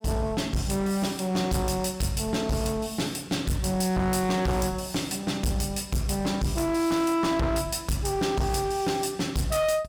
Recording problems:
distorted audio; hard clipping, signal-to-distortion ratio 7 dB

